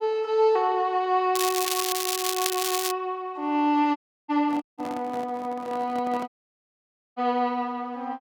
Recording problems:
crackle; from 1.5 to 3 s; loose cable, SNR 1 dB
audio cutting out; at 4 s, at 4.5 s and at 6.5 s for 1 s
microphone handling noise; from 4.5 to 6.5 s; peak -8 dB vs average level

